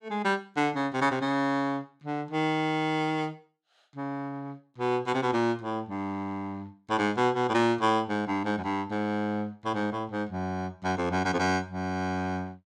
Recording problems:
none

